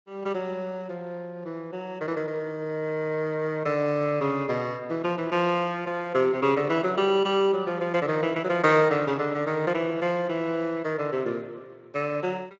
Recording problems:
codec artefacts; MP2, then Speex, log-spectral distance 2 dB

